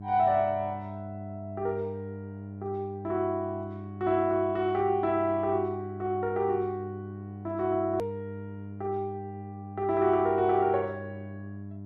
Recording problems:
hum; 50 Hz, harmonics up to 700 Hz, SNR 12 dB
click at an edit; at 8 s

